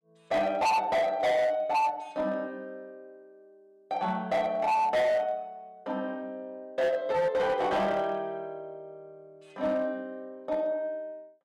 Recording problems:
distorted audio; hard clipping, signal-to-distortion ratio 8 dB

